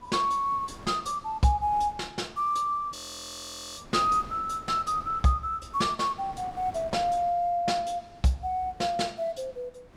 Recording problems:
wind on the microphone; below 790 Hz, SNR 21 dB
audio freezing; at 3 s for 1 s

